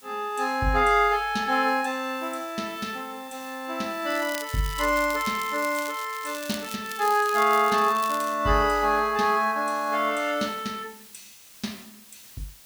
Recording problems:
background hiss; slope +1 dB per octave, SNR 22 dB
crackling; from 4 to 7 s and from 7 to 8.5 s; loose cable, SNR 14 dB

